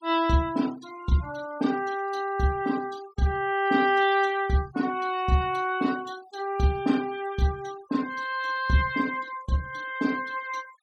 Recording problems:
noise reduction artefacts; signal-to-artefact ratio 21 dB

